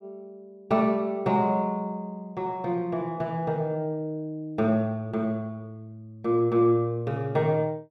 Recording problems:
none

